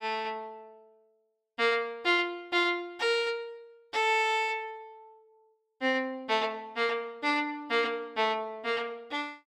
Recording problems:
none

